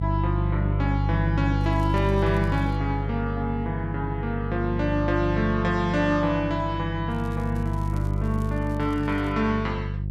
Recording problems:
hum; 50 Hz, harmonics up to 350 Hz, SNR 1 dB
crackling; from 1.5 to 3 s and from 7 to 9.5 s; loose cable, SNR 27 dB

